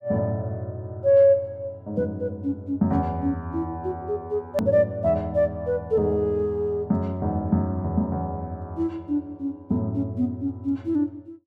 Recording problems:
edit click; at 4.5 s

